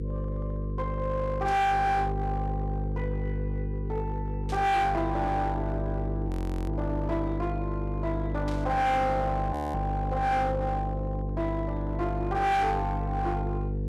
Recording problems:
distortion; hard clipping, uneven, signal-to-distortion ratio 10 dB
electrical hum; 50 Hz, harmonics up to 500 Hz, SNR 3 dB
burst of static; 4 times, first at 1.5 s; peak -11 dB vs average level
frozen audio; at 6.5 s and at 9.5 s

